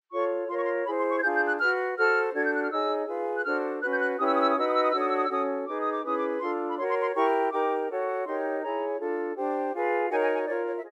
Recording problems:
none

